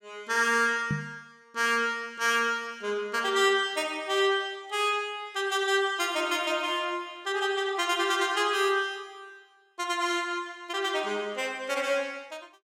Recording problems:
knock on the microphone; at 1 s; peak +1 dB vs average level

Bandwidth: 16.5 kHz